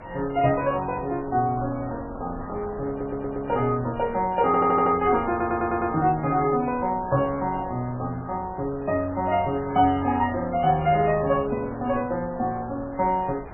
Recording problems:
lossy codec; MP3, log-spectral distance 3 dB, nothing above 2.5 kHz
wind on the microphone; below 920 Hz, SNR 16 dB
stutter; at 3 s, at 4.5 s and at 5.5 s

